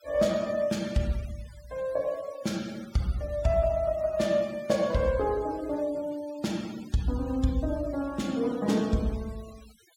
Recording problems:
denoising artefacts; signal-to-artefact ratio 21 dB

